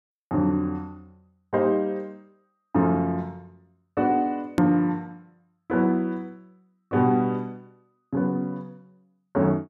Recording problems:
click at an edit; at 4.5 s

